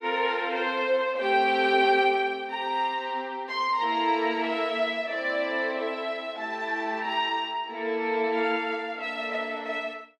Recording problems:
none

